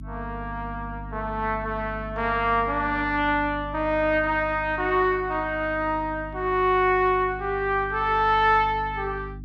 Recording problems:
mains hum; 50 Hz, harmonics up to 300 Hz, SNR 15 dB

